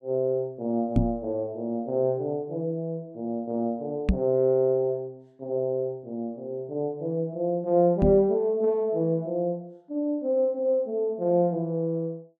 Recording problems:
microphone bump; at 1 s, at 4 s and at 8 s; peak +7 dB vs average level

